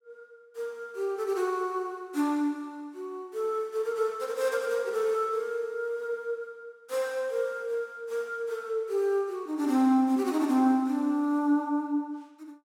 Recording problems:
none

